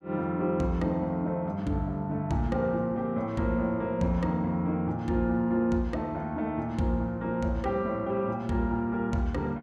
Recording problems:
none

